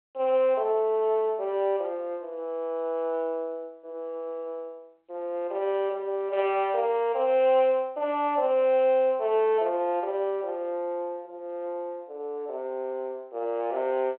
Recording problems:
phone line; 340 Hz to 3.3 kHz, G.726

